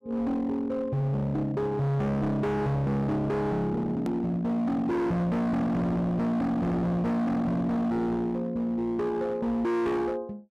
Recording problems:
distorted audio; hard clipping, signal-to-distortion ratio 6 dB
edit click; at 4 s

